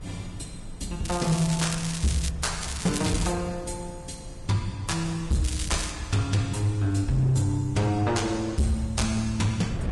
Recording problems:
lossy codec; Vorbis, log-spectral distance 5 dB, nothing above 11 kHz
distortion; hard clipping, signal-to-distortion ratio 12 dB
wind noise; below 170 Hz, SNR 15 dB
crackle; from 1 to 2.5 s, at 2.5 s and at 5.5 s; loose cable, SNR 8 dB

